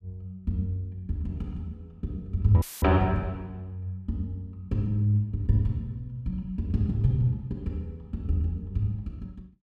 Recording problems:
dropout; at 2.5 s; filled with static

